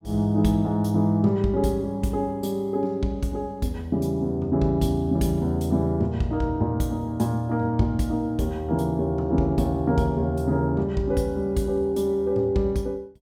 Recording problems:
none

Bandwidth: 17.5 kHz